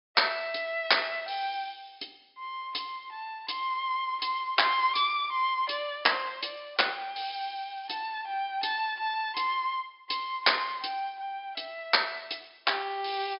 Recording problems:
treble missing; nothing above 5.5 kHz

